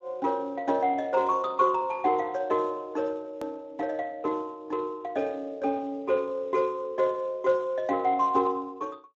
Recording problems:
lossy compression; Speex, log-spectral distance 3 dB
hard cut with a click; at 3.5 s

